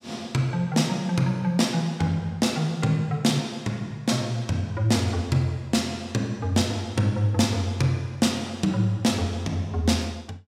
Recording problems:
none

